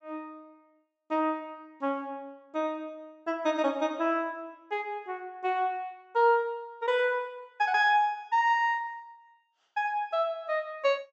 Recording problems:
treble cut off; nothing above 8 kHz

